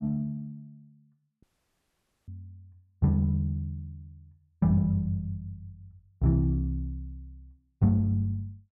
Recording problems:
dropout; at 1.5 s for 1 s

